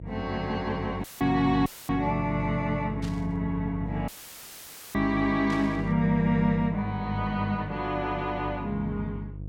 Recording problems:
hum; 50 Hz, harmonics up to 500 Hz, SNR 10 dB
audio cutting out; at 1 s, at 1.5 s and at 4 s for 1 s; filled with static
static burst; at 3 s and at 5.5 s; peak -9 dB vs average level

